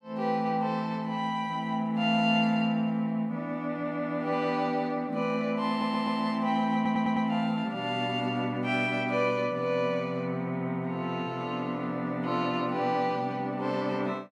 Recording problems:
audio stuttering; at 5.5 s and at 7 s

